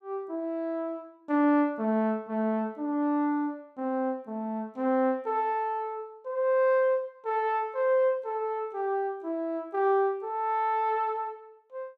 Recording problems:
none

